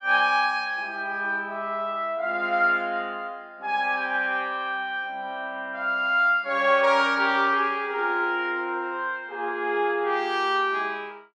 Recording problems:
none

